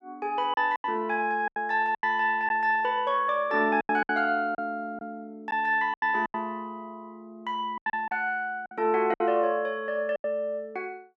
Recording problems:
packet loss; 9% of the sound replaced, filled with silence

